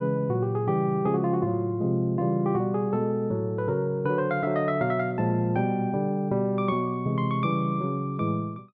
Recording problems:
none

